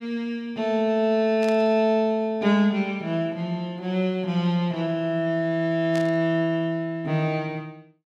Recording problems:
burst of static; at 1.5 s and at 6 s; peak -10 dB vs average level

